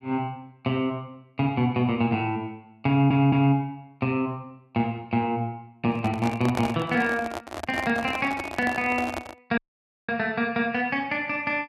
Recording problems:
stutter; at 3 s
microphone handling noise; from 6 to 9.5 s; peak 0 dB vs average level
audio cutting out; at 9.5 s for 0.5 s

